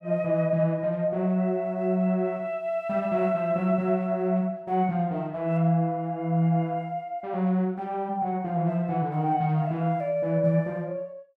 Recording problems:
none

